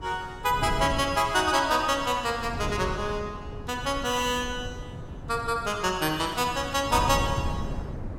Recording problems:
wind noise; below 230 Hz, SNR 10 dB

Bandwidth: 17.5 kHz